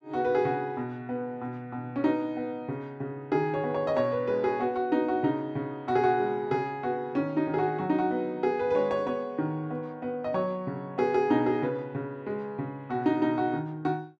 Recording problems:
none

